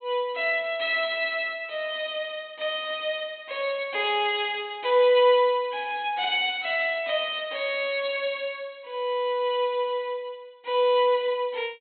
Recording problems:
low-pass filter; nothing above 4 kHz

